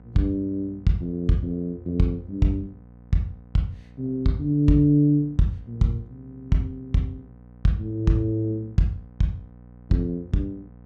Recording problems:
electrical hum; 60 Hz, harmonics up to 1 kHz, SNR 23 dB

